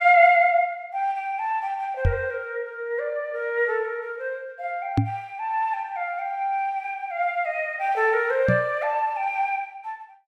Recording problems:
microphone thump; at 2 s, at 5 s and at 8.5 s; peak +7 dB vs average level

